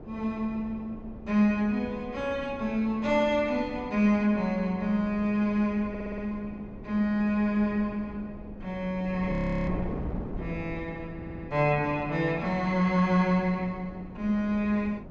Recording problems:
treble cut off; nothing above 8 kHz
wind noise; below 370 Hz, SNR 14 dB
audio stuttering; at 6 s and at 11 s
frozen audio; at 9.5 s

